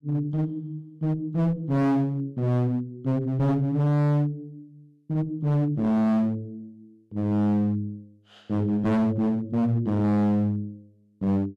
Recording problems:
distortion; hard clipping, uneven, signal-to-distortion ratio 5 dB

